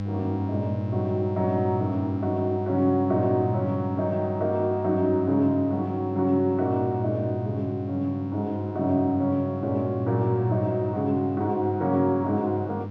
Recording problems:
mains hum; 50 Hz, harmonics up to 800 Hz, SNR 8 dB

